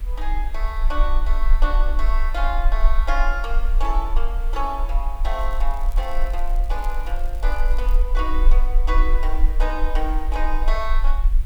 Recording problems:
hiss; SNR 19 dB
low-frequency rumble; below 36 Hz, strongest tone 24 Hz, SNR -5 dB
crackling; from 5.5 to 8 s; loose cable, SNR 22 dB

